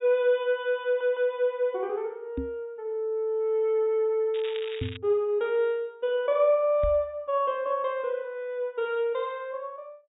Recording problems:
treble cut off; nothing above 4 kHz
audio stuttering; at 1 s
microphone bump; at 2.5 s, at 5 s and at 7 s; peak -1 dB vs average level
crackling; at 4.5 s; loose cable, SNR 15 dB

